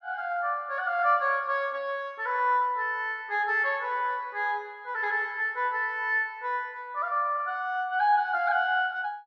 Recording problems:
none

